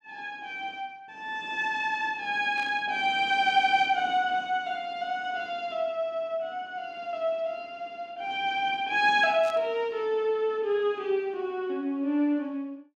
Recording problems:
burst of static; at 2.5 s and at 9.5 s; peak -12 dB vs average level

